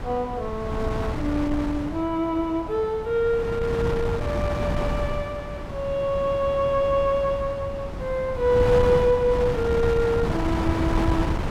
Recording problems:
wind on the microphone; below 420 Hz, SNR 5 dB

